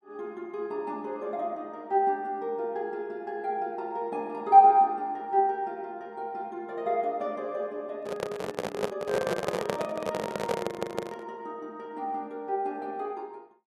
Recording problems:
microphone handling noise; from 8 to 11 s; peak +4 dB vs average level
stutter; at 11 s

